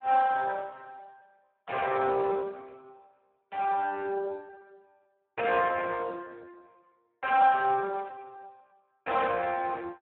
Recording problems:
phone line; 260 Hz to 2.1 kHz, Speex

